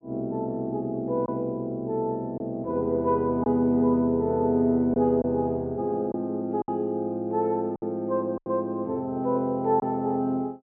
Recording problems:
packet loss; 3% of the sound replaced, filled with silence

